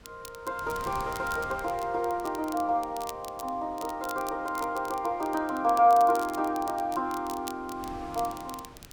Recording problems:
wind on the microphone; below 1.2 kHz, SNR 20 dB
crackling; vinyl, SNR 18 dB

